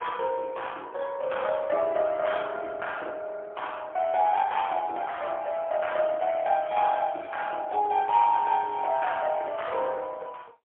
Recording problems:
phone line; 280 Hz to 3.4 kHz, AMR-NB, then MP3

